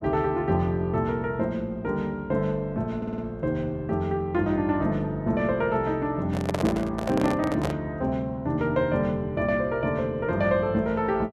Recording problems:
stutter; at 3 s
handling noise; from 6.5 to 8 s; peak +1 dB vs average level

